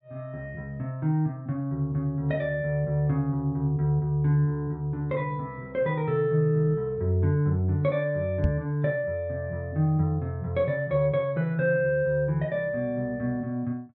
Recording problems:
microphone bump; at 8.5 s; peak +5 dB vs average level

